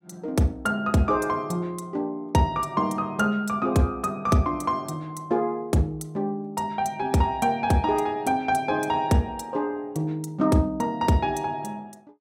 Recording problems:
none

